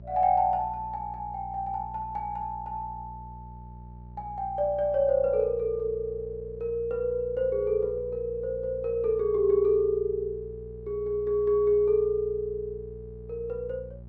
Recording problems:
electrical hum; 60 Hz, harmonics up to 600 Hz, SNR 17 dB

